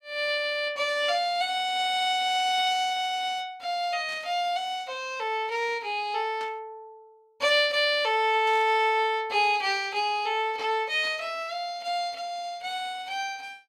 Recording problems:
static burst; 4 times, first at 4 s; peak -14 dB vs average level

